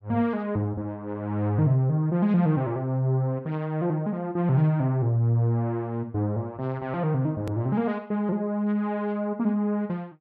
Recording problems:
click at an edit; at 7.5 s

